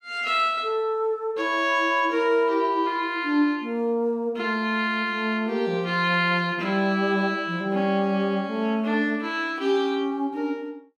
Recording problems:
none

